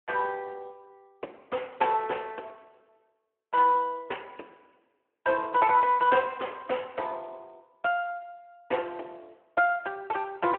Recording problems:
phone line; 280 Hz to 3.1 kHz, Speex

